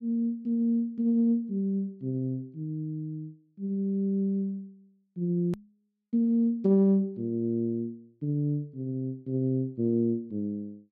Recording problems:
hard cut with a click; at 5.5 s

